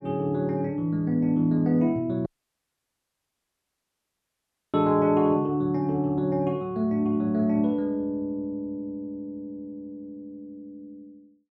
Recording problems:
dropout; at 2.5 s for 2.5 s

